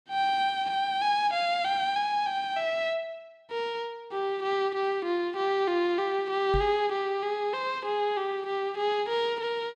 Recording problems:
microphone thump; at 6.5 s; peak 0 dB vs average level

